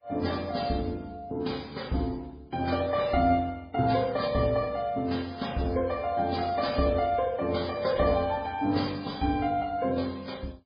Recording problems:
lossy compression; MP3, then MP3, log-spectral distance 4 dB, nothing above 4.8 kHz

